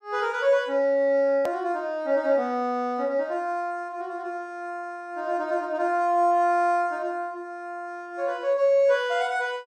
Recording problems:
edit click; at 1.5 s

